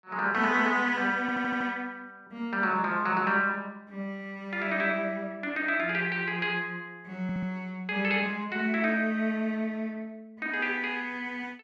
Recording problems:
stutter; at 1 s and at 7 s

